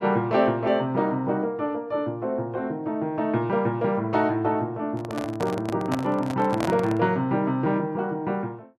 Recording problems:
microphone handling noise; from 5 to 7 s; peak +1 dB vs average level

